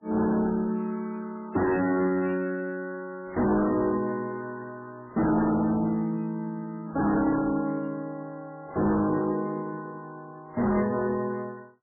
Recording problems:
codec artefacts; MP3, then MP3, log-spectral distance 2 dB, nothing above 2.6 kHz
distortion; hard clipping, signal-to-distortion ratio 7 dB

